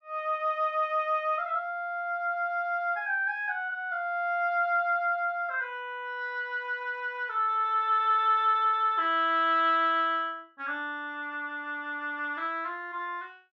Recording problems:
none

